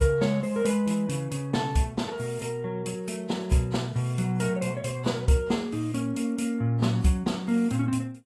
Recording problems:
codec artefacts; AAC, log-spectral distance 3 dB, nothing above 11.3 kHz

